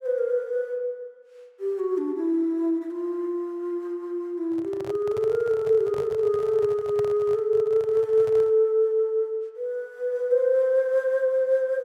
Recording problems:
handling noise; from 4.5 to 8.5 s; peak -9 dB vs average level

